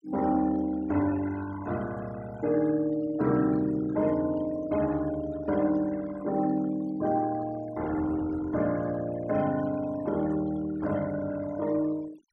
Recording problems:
noise reduction artefacts; signal-to-artefact ratio 19 dB

